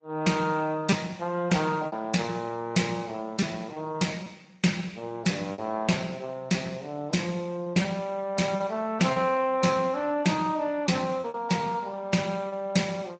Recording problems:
codec artefacts; AAC, then Speex, log-spectral distance 4 dB, nothing above 7.8 kHz
lost packets; 5% of the sound replaced, filled with repeated pitch periods

